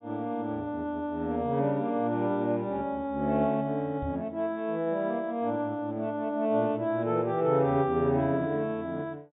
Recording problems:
treble missing; nothing above 4 kHz
microphone thump; at 4 s; peak -4 dB vs average level

